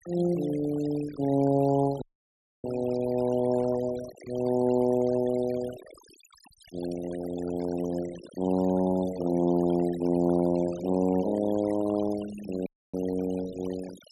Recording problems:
noise reduction artefacts; signal-to-artefact ratio 18 dB
audio cutting out; at 2 s for 0.5 s and at 13 s

